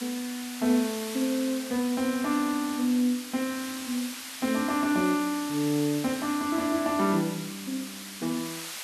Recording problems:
hiss; SNR 10 dB

